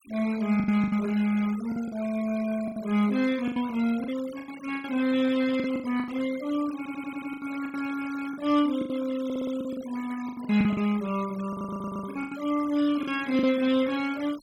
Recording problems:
denoising artefacts; signal-to-artefact ratio 18 dB
packet loss; 12% of the sound replaced, filled with the last packet
audio stuttering; at 7 s, at 9 s and at 11 s

